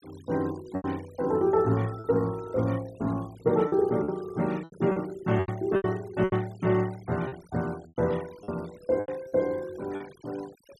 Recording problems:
denoising artefacts; signal-to-artefact ratio 23 dB
lost packets; 8% of the sound replaced, filled with repeated pitch periods

